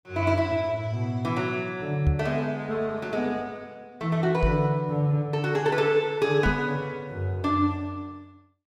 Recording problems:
microphone thump; at 2 s, at 4.5 s and at 6.5 s; peak +5 dB vs average level

